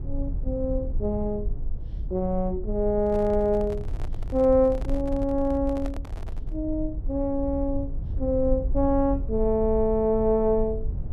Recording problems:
low-frequency rumble; below 64 Hz, SNR 8 dB
microphone handling noise; from 3 to 6.5 s; peak -11 dB vs average level

